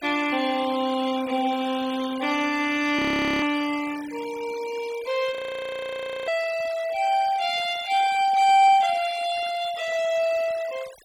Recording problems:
denoising artefacts; signal-to-artefact ratio 18 dB
frozen audio; at 3 s and at 5.5 s for 1 s

